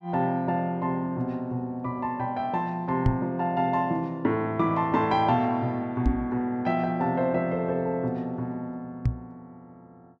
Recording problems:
microphone bump; at 3 s, at 6 s and at 9 s; peak +7 dB vs average level

